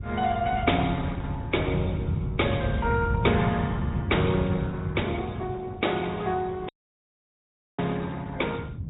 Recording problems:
low-pass filter; nothing above 3.8 kHz
lossy compression; MP3, then Opus, log-spectral distance 3 dB
low-frequency rumble; below 140 Hz, SNR 3 dB
dropout; at 6.5 s for 1 s

